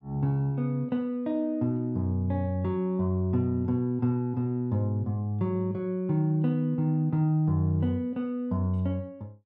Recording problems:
none

